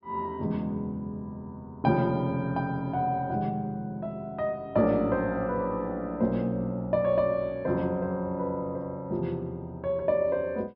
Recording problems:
treble cut off; nothing above 5.5 kHz

